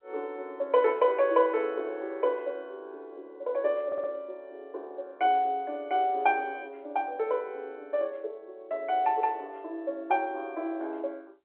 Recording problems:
phone line; 300 Hz to 3.4 kHz, G.711
audio stuttering; at 4 s

